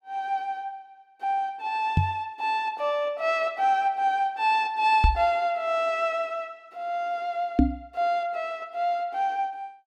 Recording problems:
knock on the microphone; at 2 s, at 5 s and at 7.5 s; peak +10 dB vs average level

